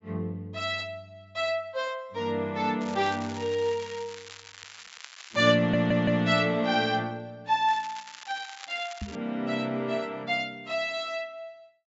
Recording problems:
treble cut off; nothing above 8 kHz
crackle; from 3 to 5.5 s and from 7.5 to 9 s; loose cable, SNR 16 dB
audio stuttering; at 5.5 s
knock on the microphone; at 9 s; peak -4 dB vs average level

